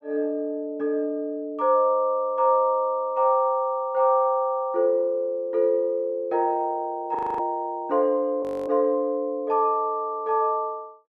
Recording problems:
audio freezing; at 7 s and at 8.5 s

